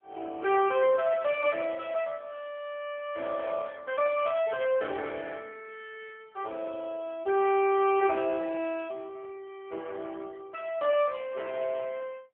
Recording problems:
telephone audio; 300 Hz to 3.5 kHz, AMR-NB

